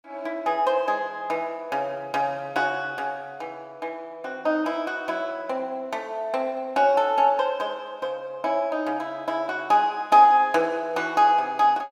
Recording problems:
none

